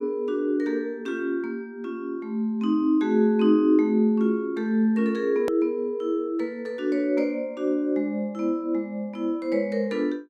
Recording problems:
hard cut with a click; at 5.5 s

